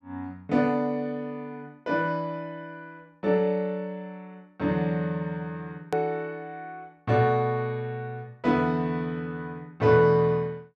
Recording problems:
click at an edit; at 6 s

